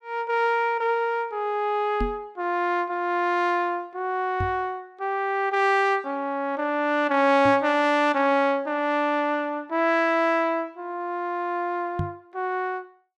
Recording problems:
microphone thump; 4 times, first at 2 s; peak 0 dB vs average level

